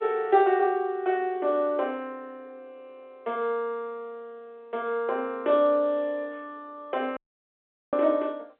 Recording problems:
telephone audio; 320 Hz to 3.8 kHz, G.711
audio cutting out; at 7 s for 1 s

